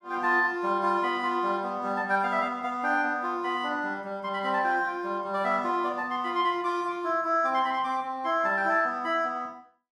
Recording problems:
none

